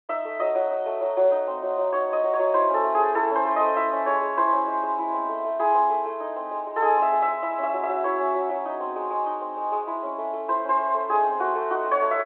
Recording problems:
phone line; 280 Hz to 3.3 kHz, G.711

